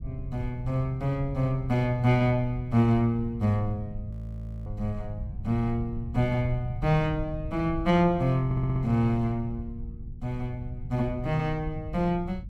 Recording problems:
low-frequency rumble; below 100 Hz, SNR 12 dB
frozen audio; at 4 s for 0.5 s
stutter; at 8.5 s

